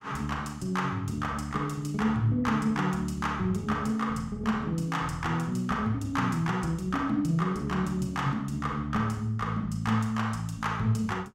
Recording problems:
none

